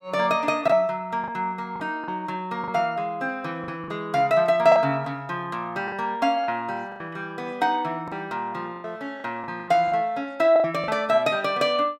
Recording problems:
packet loss; 8% of the sound replaced, filled with the last packet

